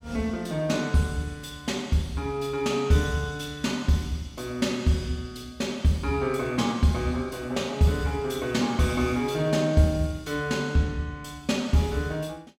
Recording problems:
none

